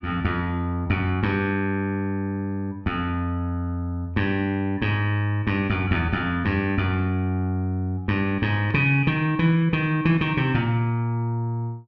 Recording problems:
none

